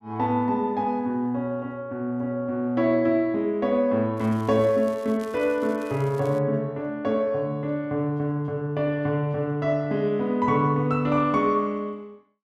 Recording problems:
crackle; from 4 to 6.5 s; loose cable, SNR 26 dB

